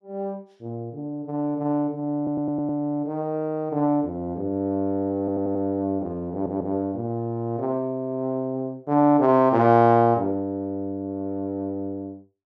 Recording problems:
audio stuttering; at 2 s, at 5 s and at 6.5 s

